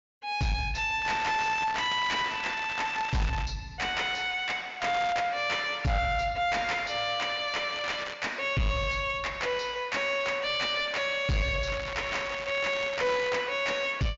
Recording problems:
treble missing; nothing above 7.3 kHz
distorted audio; soft clipping, signal-to-distortion ratio 6 dB
crackling; 4 times, first at 1 s; loose cable, SNR 11 dB

